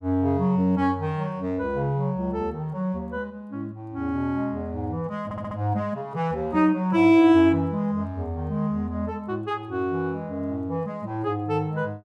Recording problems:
stutter; at 5 s

